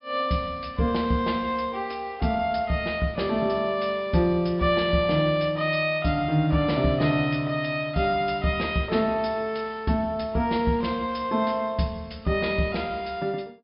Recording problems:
treble missing; nothing above 5.5 kHz

